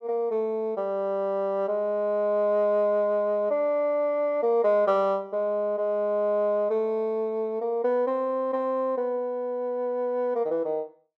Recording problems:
none

